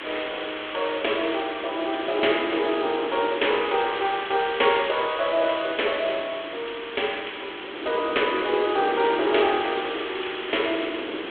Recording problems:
telephone audio; 280 Hz to 3.5 kHz, G.726
hiss; SNR 9 dB
wind on the microphone; below 520 Hz, SNR 11 dB

